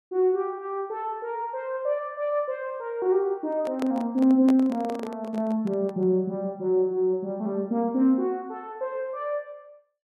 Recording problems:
microphone handling noise; from 3.5 to 6 s; peak -3 dB vs average level

